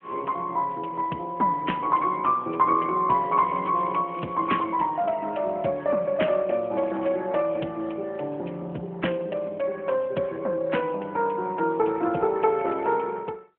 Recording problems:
telephone audio; 220 Hz to 3.2 kHz, AMR-NB
crackling; from 3 to 4.5 s and at 7 s; loose cable, SNR 27 dB

